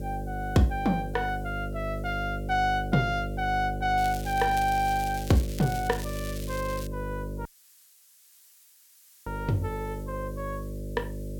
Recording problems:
electrical hum; 50 Hz, harmonics up to 600 Hz, SNR 7 dB
background hiss; slope +4 dB per octave, SNR 27 dB
crackle; from 4 to 7 s; loose cable, SNR 13 dB
dropout; at 7.5 s for 2 s

